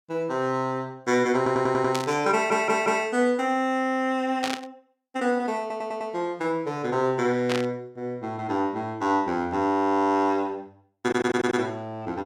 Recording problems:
stutter; 4 times, first at 1.5 s
burst of static; at 2 s, at 4.5 s and at 7.5 s; peak 0 dB vs average level

